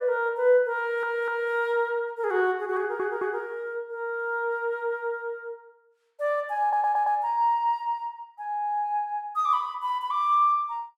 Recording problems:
stutter; at 1 s, at 3 s and at 6.5 s

